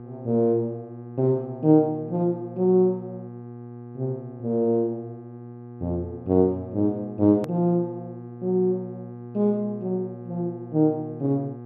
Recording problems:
treble missing; nothing above 8 kHz
hum; 60 Hz, harmonics up to 1.2 kHz, SNR 15 dB
hard cut with a click; at 7.5 s

